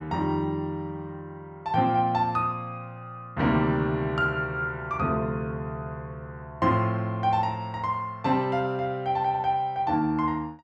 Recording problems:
none

